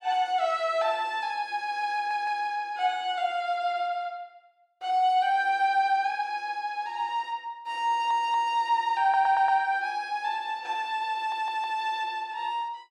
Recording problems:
audio stuttering; 4 times, first at 2 s

